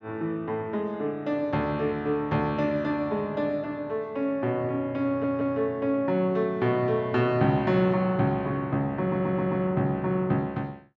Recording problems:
audio stuttering; at 5 s and at 9 s

